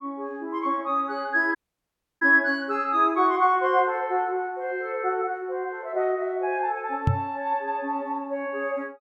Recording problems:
audio cutting out; at 1.5 s for 0.5 s
microphone bump; at 7 s; peak +6 dB vs average level

